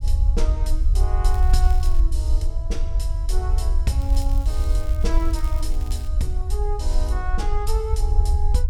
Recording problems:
low-frequency rumble; below 60 Hz, strongest tone 24 Hz, SNR -8 dB
crackle; at 1.5 s and from 4 to 6 s; loose cable, SNR 16 dB

